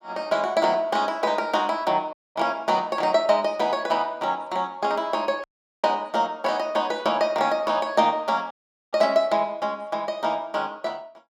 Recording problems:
audio cutting out; at 2 s, at 5.5 s and at 8.5 s

